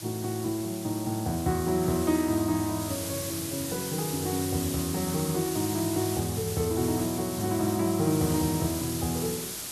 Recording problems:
background hiss; SNR 6 dB

